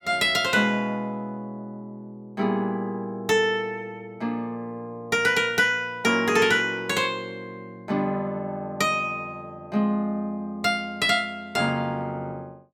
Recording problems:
none

